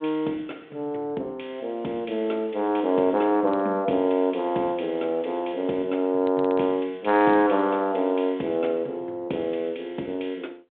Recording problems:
telephone audio; 240 Hz to 3.6 kHz, G.726

